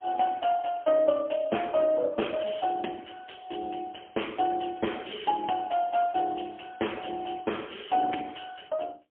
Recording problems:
telephone audio; 260 Hz to 3.3 kHz, AMR-NB, then MP3

